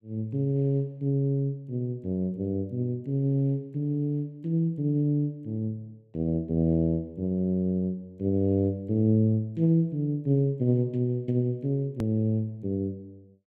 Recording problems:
hard cut with a click; at 12 s

